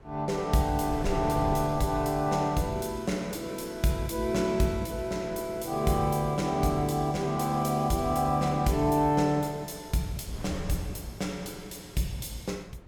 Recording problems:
wind noise; below 280 Hz, SNR 14 dB

